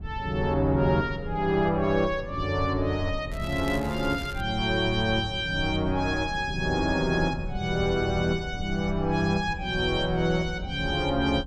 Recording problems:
low-frequency rumble; below 100 Hz, SNR 12 dB
crackle; from 3.5 to 4.5 s; loose cable, SNR 20 dB

